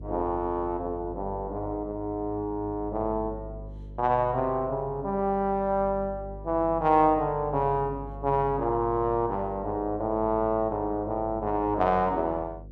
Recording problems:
mains hum; 50 Hz, harmonics up to 550 Hz, SNR 15 dB

